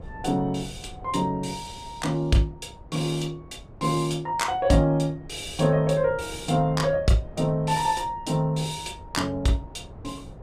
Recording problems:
wind noise; below 290 Hz, SNR 19 dB

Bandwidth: 14.5 kHz